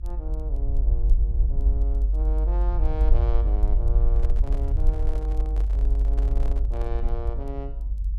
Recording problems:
rumble; below 50 Hz, strongest tone 48 Hz, SNR -13 dB
crackling; vinyl, SNR 30 dB
microphone handling noise; from 4 to 7 s; peak -1 dB vs average level

